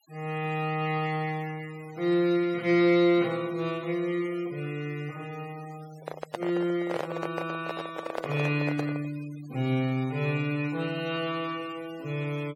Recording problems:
noise reduction artefacts; signal-to-artefact ratio 22 dB
microphone handling noise; from 6 to 9 s; peak 0 dB vs average level

